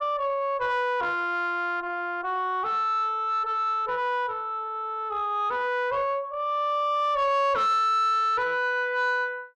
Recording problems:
distorted audio; soft clipping, signal-to-distortion ratio 11 dB

